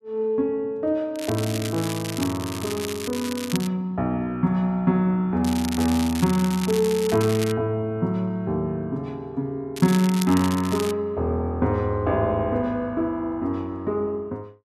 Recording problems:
crackling; from 1 to 3.5 s, from 5.5 to 7.5 s and from 9.5 to 11 s; loose cable, SNR 10 dB

